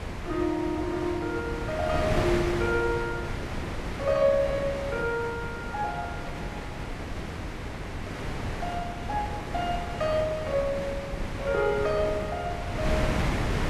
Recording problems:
wind on the microphone; below 910 Hz, SNR 4 dB

